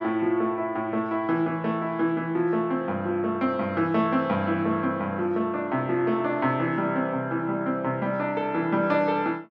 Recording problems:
none

